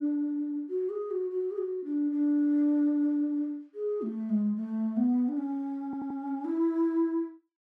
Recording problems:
stutter; at 6 s

